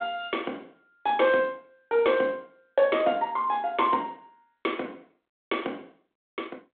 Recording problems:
telephone audio; 240 Hz to 3.6 kHz, G.726

